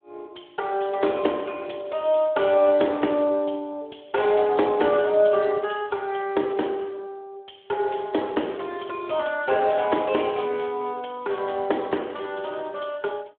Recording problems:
phone line; 260 Hz to 3.6 kHz, Speex

